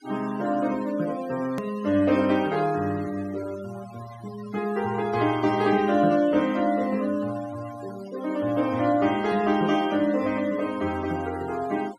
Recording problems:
noise reduction artefacts; signal-to-artefact ratio 19 dB
click at an edit; at 1.5 s

